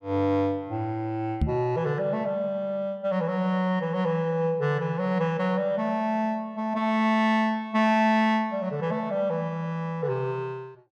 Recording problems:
microphone bump; at 1.5 s; peak +5 dB vs average level

